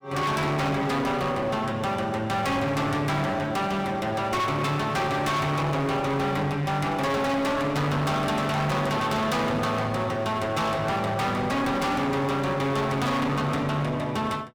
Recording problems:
distorted audio; hard clipping, uneven, signal-to-distortion ratio 5 dB

